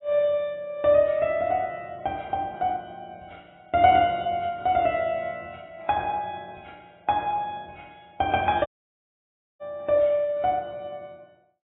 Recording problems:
lossy codec; AAC, log-spectral distance 2 dB, nothing above 3.2 kHz
audio cutting out; at 8.5 s for 1 s

